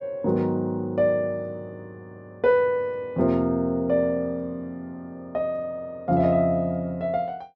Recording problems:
none

